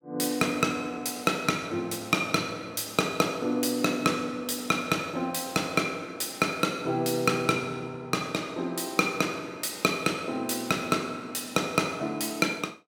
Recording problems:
none

